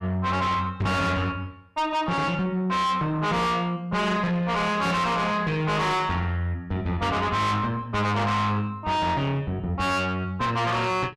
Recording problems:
distorted audio; soft clipping, signal-to-distortion ratio 5 dB

